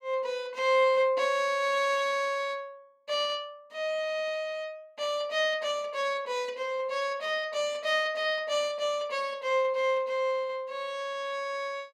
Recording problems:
none

